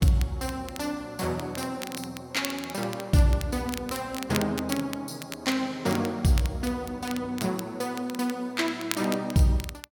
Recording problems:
crackle; vinyl, SNR 12 dB

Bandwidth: 17 kHz